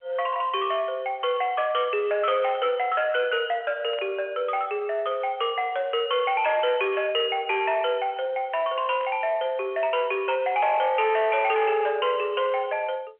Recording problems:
phone line; 280 Hz to 3.2 kHz, G.711
distortion; soft clipping, signal-to-distortion ratio 10 dB
burst of static; 5 times, first at 2.5 s; peak -12 dB vs average level

